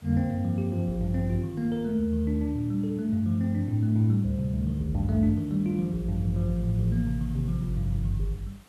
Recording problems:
background hiss; slope -3 dB per octave, SNR 29 dB

